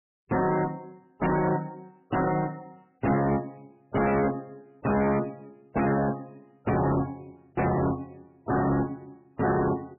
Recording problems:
codec artefacts; MP3, log-spectral distance 4 dB, nothing above 2.7 kHz
distortion; hard clipping, signal-to-distortion ratio 6 dB

